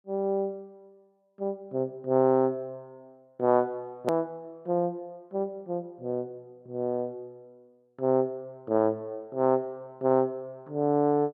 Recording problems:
edit click; at 4 s

